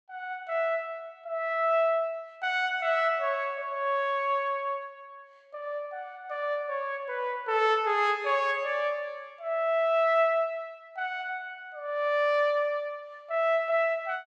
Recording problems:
none

